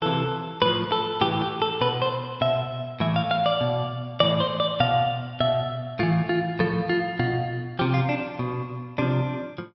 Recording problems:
low-pass filter; nothing above 5.7 kHz

